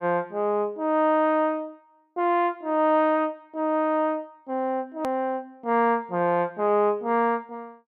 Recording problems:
hard cut with a click; at 5 s

